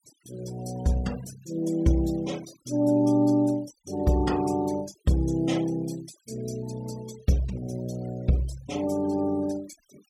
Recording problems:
denoising artefacts; signal-to-artefact ratio 21 dB

